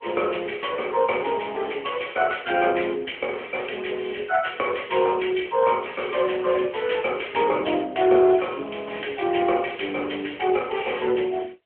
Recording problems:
telephone audio; 280 Hz to 3.3 kHz, AMR-NB

